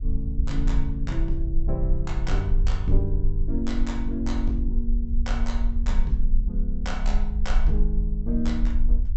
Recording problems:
treble cut off; nothing above 8 kHz
low-frequency rumble; below 44 Hz, strongest tone 22 Hz, SNR -3 dB

